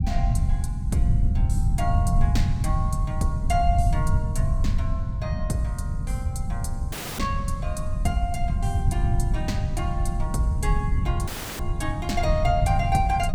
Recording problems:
rumble; below 110 Hz, SNR -4 dB
dropout; at 7 s and at 11 s

